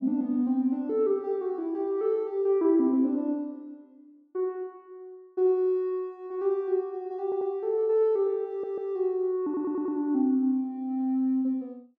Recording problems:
stutter; at 7 s, at 8.5 s and at 9.5 s

